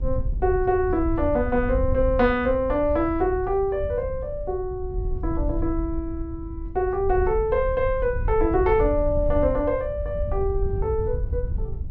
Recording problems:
wind on the microphone; below 80 Hz, SNR 7 dB

